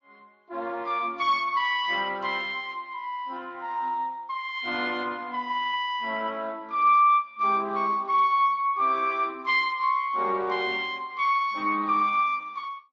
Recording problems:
lossy compression; Speex, then MP3, log-spectral distance 2 dB, nothing above 7.3 kHz

